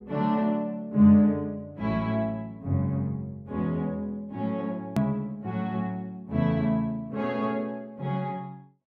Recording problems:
edit click; at 5 s

